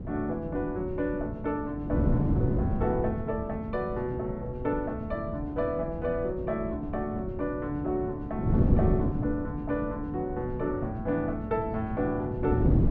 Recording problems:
wind on the microphone; below 230 Hz, SNR 1 dB

